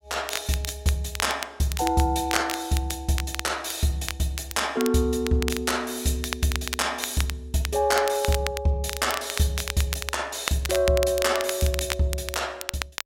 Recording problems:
crackling; vinyl, SNR 8 dB

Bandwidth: 16 kHz